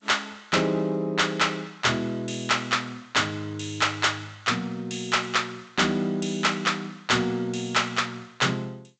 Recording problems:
codec artefacts; G.722, log-spectral distance 5 dB, nothing above 7.8 kHz
distortion; hard clipping, signal-to-distortion ratio 11 dB

